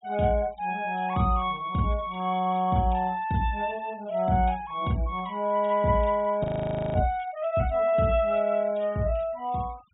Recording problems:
treble missing; nothing above 4 kHz
noise reduction artefacts; signal-to-artefact ratio 28 dB
frozen audio; at 6.5 s for 0.5 s

